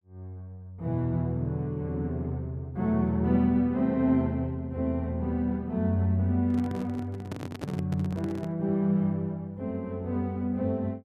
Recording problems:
microphone handling noise; from 6.5 to 8.5 s; peak -3 dB vs average level

